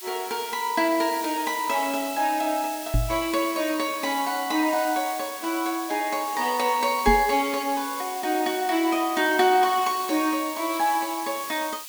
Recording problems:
background hiss; slope +4 dB per octave, SNR 11 dB
microphone thump; at 3 s and at 7 s; peak +4 dB vs average level

